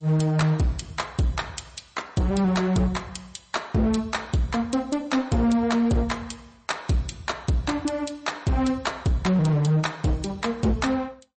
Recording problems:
lossy codec; MP3, log-spectral distance 4 dB, nothing above 8.2 kHz
distortion; hard clipping, signal-to-distortion ratio 10 dB

